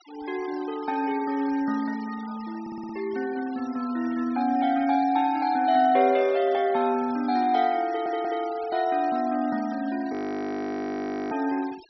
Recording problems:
treble missing; nothing above 5.8 kHz
denoising artefacts; signal-to-artefact ratio 20 dB
stutter; at 2.5 s and at 8 s
frozen audio; at 10 s for 1 s

